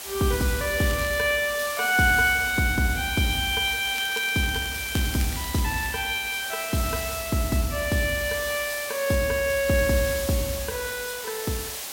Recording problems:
hiss; slope 0 dB per octave, SNR 8 dB
crackle; at 1 s and from 4 to 6 s; loose cable, SNR 15 dB

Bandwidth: 16.5 kHz